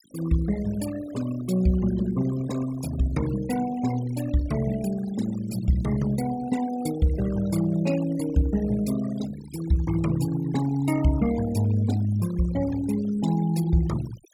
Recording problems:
denoising artefacts; signal-to-artefact ratio 15 dB

